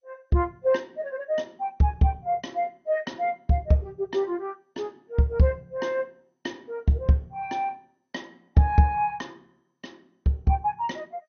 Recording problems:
codec artefacts; MP2, log-spectral distance 2 dB, nothing above 6.3 kHz

